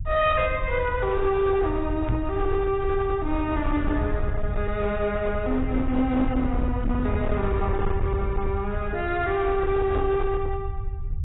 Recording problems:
lossy compression; AAC, log-spectral distance 2 dB, nothing above 3.8 kHz
distortion; hard clipping, signal-to-distortion ratio 12 dB
low-frequency rumble; below 90 Hz, SNR 5 dB
microphone thump; at 2 s and at 10 s; peak +3 dB vs average level

